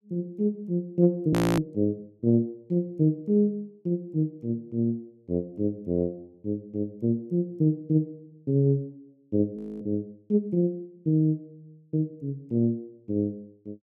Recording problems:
frozen audio; at 1.5 s and at 9.5 s

